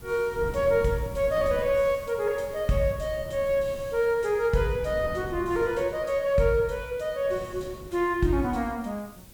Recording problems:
hiss; slope +2 dB per octave, SNR 25 dB
wind on the microphone; below 240 Hz, SNR 16 dB

